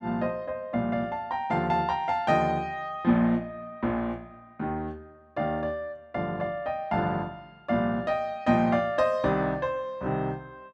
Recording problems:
none

